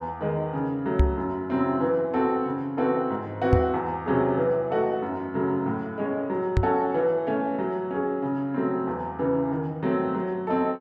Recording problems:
knock on the microphone; at 1 s, at 3.5 s and at 6.5 s; peak +9 dB vs average level

